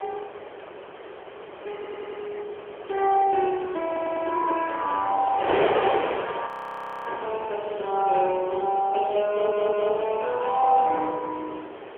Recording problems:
telephone audio; 320 Hz to 3.3 kHz, AMR-NB
wind noise; below 1.1 kHz, SNR 8 dB
stutter; at 2 s, at 4 s and at 9.5 s
frozen audio; at 6.5 s for 0.5 s

